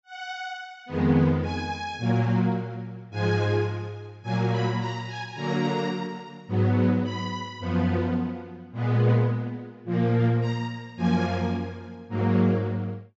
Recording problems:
treble missing; nothing above 8 kHz

